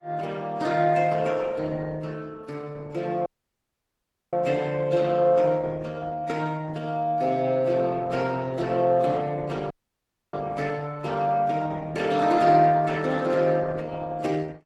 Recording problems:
codec artefacts; AAC, then Opus, log-spectral distance 3 dB
dropout; at 3.5 s for 1 s and at 9.5 s for 0.5 s

